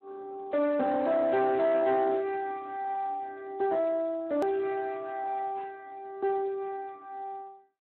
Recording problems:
telephone audio; 110 Hz to 2.8 kHz, Speex
distorted audio; soft clipping, signal-to-distortion ratio 11 dB
edit click; at 4.5 s

